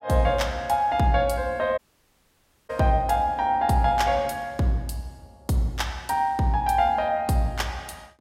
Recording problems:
dropout; at 2 s for 1 s

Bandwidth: 16 kHz